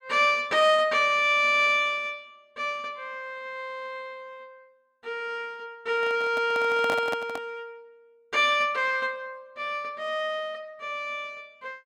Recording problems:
microphone handling noise; from 6 to 7.5 s; peak -3 dB vs average level

